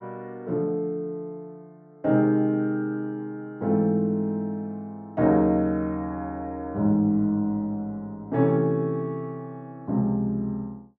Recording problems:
low-pass filter; nothing above 8 kHz

